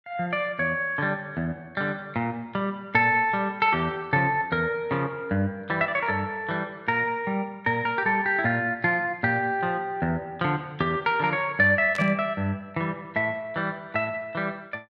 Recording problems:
burst of static; at 12 s; peak -8 dB vs average level

